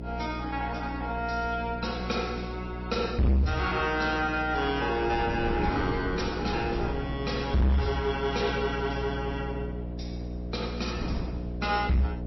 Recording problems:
lossy compression; MP3, then MP3, log-spectral distance 3 dB, nothing above 5.7 kHz
distortion; hard clipping, uneven, signal-to-distortion ratio 6 dB
electrical hum; 60 Hz, harmonics up to 720 Hz, SNR 7 dB
wind on the microphone; below 310 Hz, SNR 12 dB

